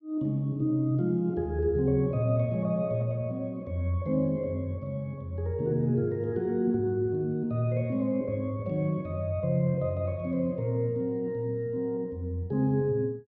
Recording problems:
none

